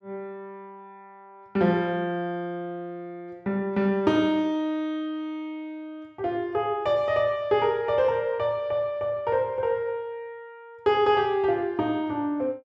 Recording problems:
none

